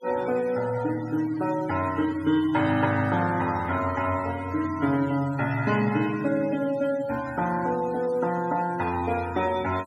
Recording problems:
noise reduction artefacts; signal-to-artefact ratio 17 dB

